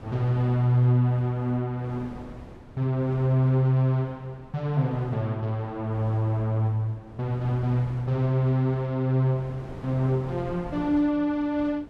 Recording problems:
wind noise; below 450 Hz, SNR 19 dB

